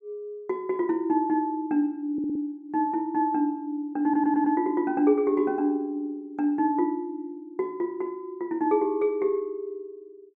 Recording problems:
audio stuttering; at 2 s and at 4 s

